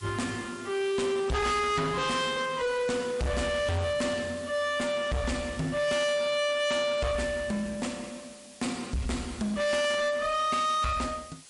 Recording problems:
codec artefacts; MP3, log-spectral distance 6 dB, nothing above 10.7 kHz
distorted audio; soft clipping, signal-to-distortion ratio 6 dB
hiss; slope +2 dB per octave, SNR 20 dB

